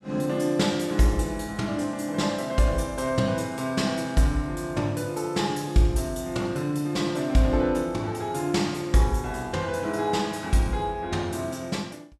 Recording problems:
none

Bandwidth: 14 kHz